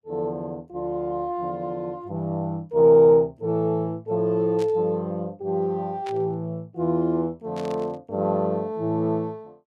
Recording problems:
static burst; at 4.5 s, at 6 s and at 7.5 s; peak -13 dB vs average level

